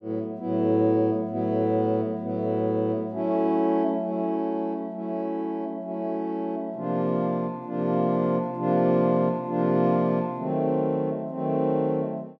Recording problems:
none

